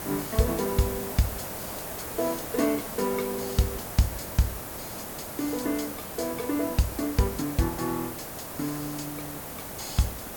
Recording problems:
hiss; slope -5 dB per octave, SNR 5 dB

